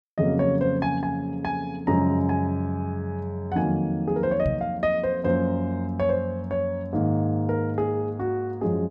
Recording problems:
microphone bump; at 4.5 s; peak +2 dB vs average level

